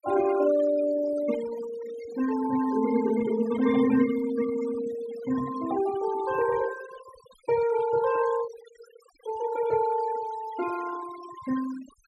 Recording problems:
noise reduction artefacts; signal-to-artefact ratio 14 dB

